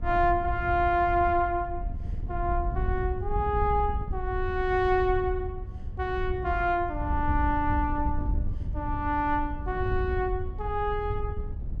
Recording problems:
wind on the microphone; below 86 Hz, SNR 6 dB

